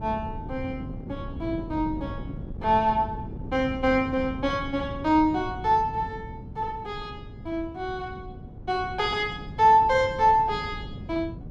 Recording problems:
wind on the microphone; below 210 Hz, SNR 13 dB

